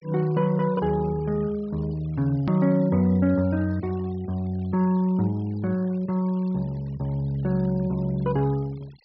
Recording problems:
treble missing; nothing above 5.5 kHz
denoising artefacts; signal-to-artefact ratio 27 dB
hard cut with a click; at 2.5 s

